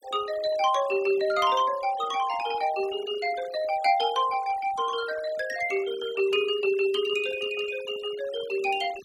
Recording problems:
noise reduction artefacts; signal-to-artefact ratio 19 dB

